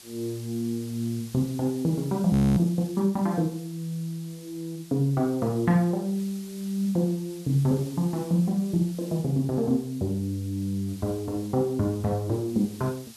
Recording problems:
hiss; SNR 20 dB
frozen audio; at 2.5 s

